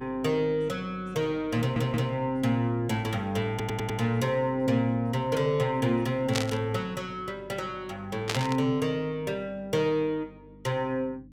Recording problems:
hum; 50 Hz, harmonics up to 300 Hz, SNR 22 dB
audio stuttering; at 1.5 s and at 3.5 s
burst of static; at 6.5 s and at 8.5 s; peak +3 dB vs average level

